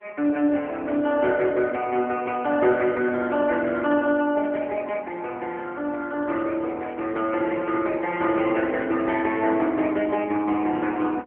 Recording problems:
telephone audio; 220 Hz to 3.1 kHz, AMR-NB

